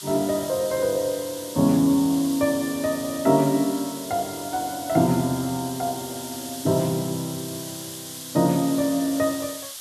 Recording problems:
background hiss; SNR 11 dB

